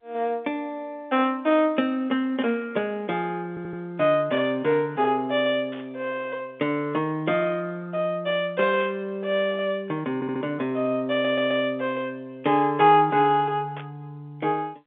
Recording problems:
telephone audio; 170 Hz to 3.6 kHz, G.711
static burst; 5 times, first at 2.5 s; peak -12 dB vs average level
audio stuttering; at 3.5 s, at 10 s and at 11 s

